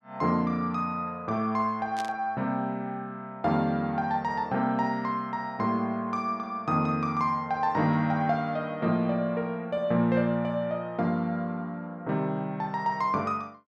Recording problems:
static burst; at 2 s; peak -6 dB vs average level

